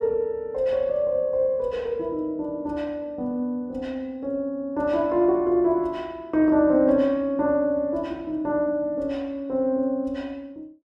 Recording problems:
none

